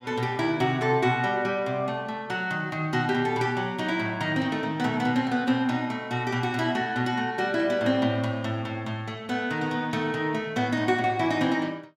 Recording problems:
none

